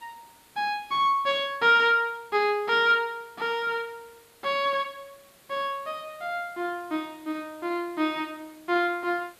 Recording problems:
background hiss; slope -2 dB per octave, SNR 28 dB

